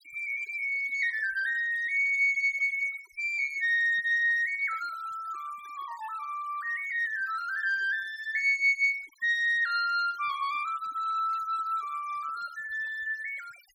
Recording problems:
denoising artefacts; signal-to-artefact ratio 24 dB

